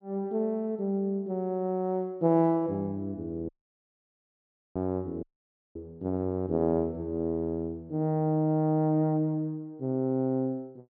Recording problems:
audio cutting out; at 3.5 s for 1.5 s and at 5 s for 0.5 s

